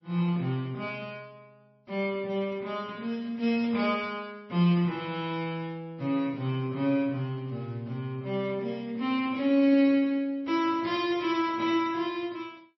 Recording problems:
lossy codec; MP3, log-spectral distance 2 dB, nothing above 5.7 kHz

